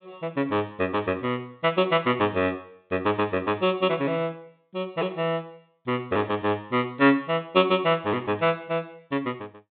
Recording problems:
treble missing; nothing above 4 kHz

